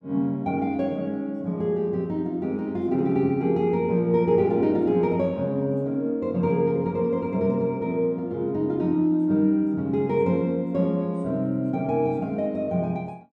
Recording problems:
none

